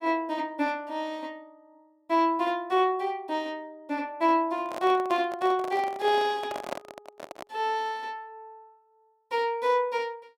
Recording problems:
handling noise; from 4.5 to 7.5 s; peak -1 dB vs average level

